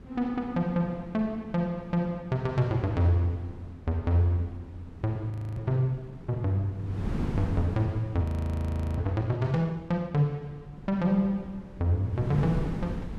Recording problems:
wind on the microphone; below 250 Hz, SNR 11 dB
frozen audio; at 5.5 s and at 8 s for 0.5 s

